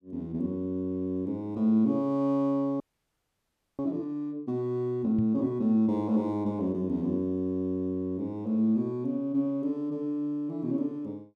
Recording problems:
frozen audio; at 3 s for 1 s
knock on the microphone; at 5 s; peak 0 dB vs average level

